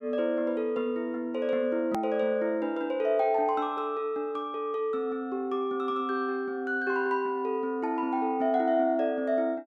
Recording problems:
hard cut with a click; at 2 s

